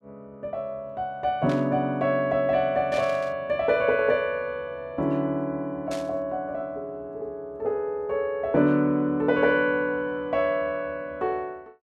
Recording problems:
static burst; at 1.5 s, at 3 s and at 6 s; peak -9 dB vs average level

